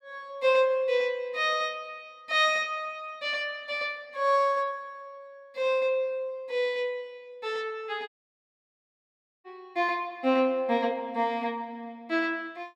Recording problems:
audio cutting out; at 8 s for 1.5 s

